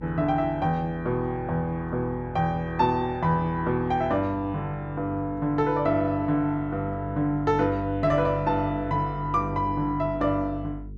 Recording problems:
hum; 50 Hz, harmonics up to 450 Hz, SNR 16 dB

